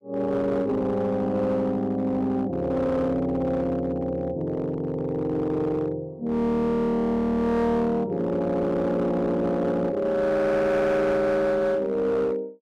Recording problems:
distorted audio; hard clipping, uneven, signal-to-distortion ratio 9 dB

